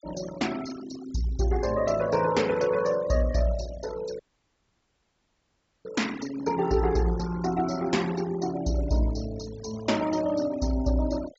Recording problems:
treble cut off; nothing above 8 kHz
denoising artefacts; signal-to-artefact ratio 16 dB
dropout; at 4 s for 1.5 s

